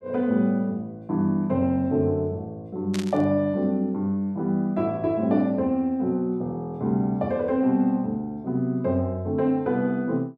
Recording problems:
burst of static; at 3 s; peak -6 dB vs average level

